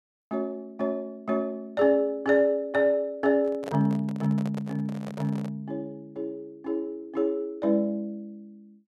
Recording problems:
microphone handling noise; from 3.5 to 5.5 s; peak -5 dB vs average level

